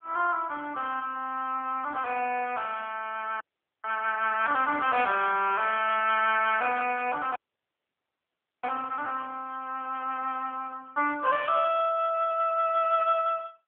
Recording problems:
phone line; 260 Hz to 3.3 kHz, AMR-NB
dropout; at 3.5 s and at 7.5 s for 1.5 s

